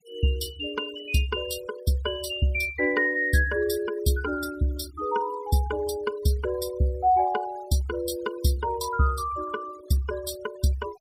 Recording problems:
noise reduction artefacts; signal-to-artefact ratio 18 dB

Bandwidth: 15.5 kHz